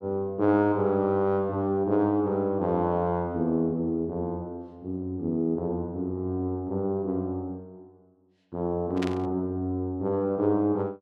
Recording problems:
burst of static; at 9 s; peak -4 dB vs average level

